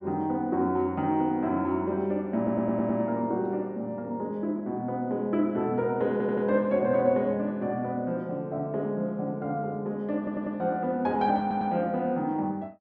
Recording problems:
audio stuttering; 4 times, first at 2.5 s

